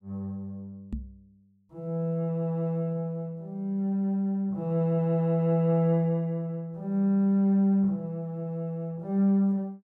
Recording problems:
knock on the microphone; at 1 s; peak -3 dB vs average level

